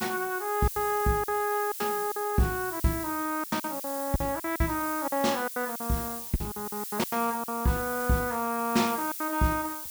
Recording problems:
hiss; slope +6 dB per octave, SNR 7 dB
lost packets; 11% of the sound replaced, filled with silence

